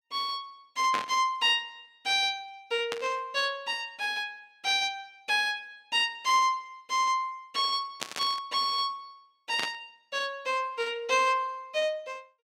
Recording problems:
static burst; 4 times, first at 1 s; peak 0 dB vs average level

